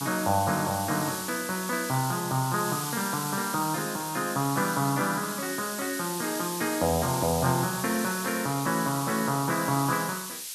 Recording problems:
hiss; slope +6 dB per octave, SNR 6 dB

